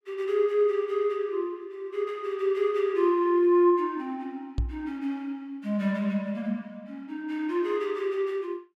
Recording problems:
microphone bump; at 4.5 s; peak +2 dB vs average level

